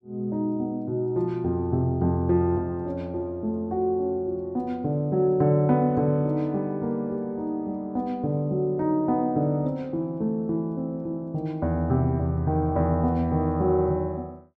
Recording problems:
none

